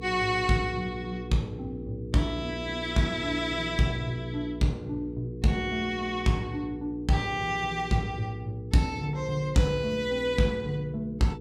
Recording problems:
mains hum; 60 Hz, harmonics up to 480 Hz, SNR 10 dB

